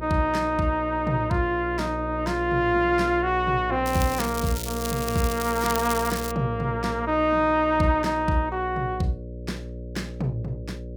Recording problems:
hum; 60 Hz, harmonics up to 600 Hz, SNR 10 dB
crackle; from 4 to 6.5 s; loose cable, SNR 9 dB

